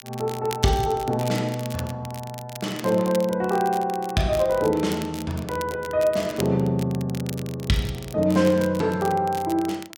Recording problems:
crackle; vinyl, SNR 16 dB

